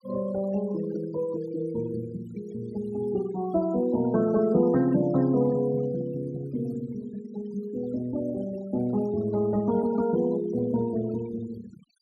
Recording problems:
denoising artefacts; signal-to-artefact ratio 19 dB

